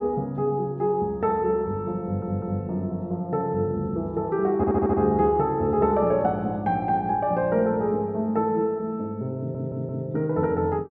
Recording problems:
stutter; at 2 s, at 4.5 s and at 9.5 s

